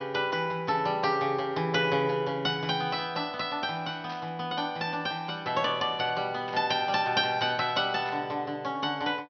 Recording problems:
treble cut off; nothing above 5.9 kHz
static burst; at 4 s, at 6.5 s and at 8 s; peak -11 dB vs average level

